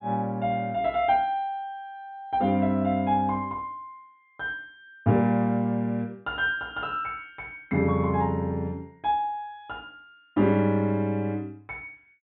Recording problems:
treble missing; nothing above 4 kHz

